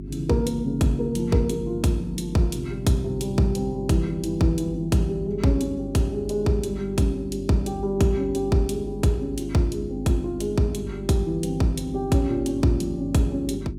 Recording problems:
hum; 50 Hz, harmonics up to 400 Hz, SNR 11 dB

